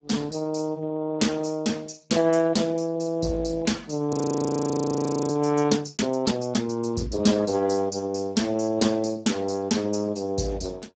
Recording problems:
lossy codec; Speex, log-spectral distance 6 dB, nothing above 7.6 kHz
frozen audio; at 4 s for 1 s

